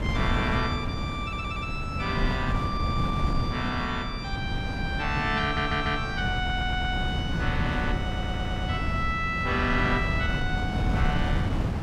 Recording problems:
wind noise; below 210 Hz, SNR 1 dB
audio stuttering; 4 times, first at 1 s

